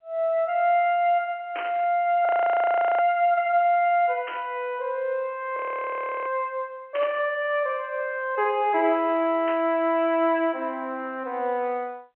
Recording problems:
telephone audio; 280 Hz to 3.3 kHz, G.711
burst of static; 4 times, first at 1.5 s; peak -6 dB vs average level
frozen audio; at 2.5 s for 0.5 s and at 5.5 s for 0.5 s

